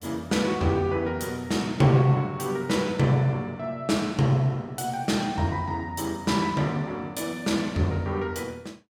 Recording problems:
none

